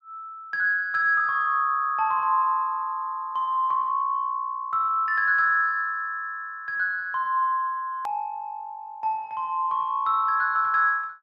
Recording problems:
click at an edit; at 8 s

